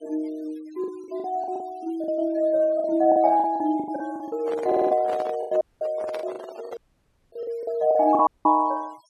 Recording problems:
noise reduction artefacts; signal-to-artefact ratio 26 dB
packet loss; 14% of the sound replaced, filled with the last packet
handling noise; from 4.5 to 7 s; peak -5 dB vs average level
audio stuttering; at 4.5 s
audio cutting out; at 5.5 s, at 7 s for 0.5 s and at 8.5 s

